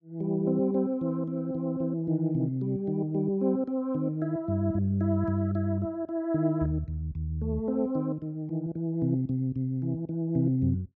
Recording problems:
none

